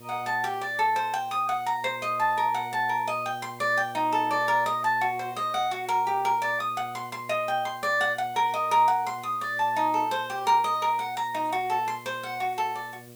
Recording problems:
hum; 60 Hz, harmonics up to 1.2 kHz, SNR 22 dB
hiss; SNR 25 dB

